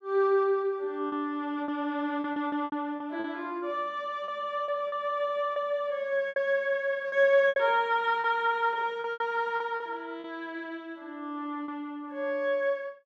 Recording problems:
lost packets; 8% of the sound replaced, filled with repeated pitch periods

